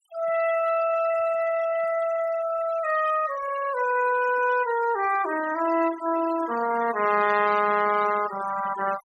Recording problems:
noise reduction artefacts; signal-to-artefact ratio 13 dB

